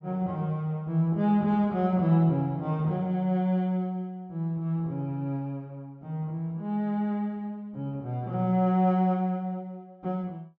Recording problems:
treble missing; nothing above 7.6 kHz

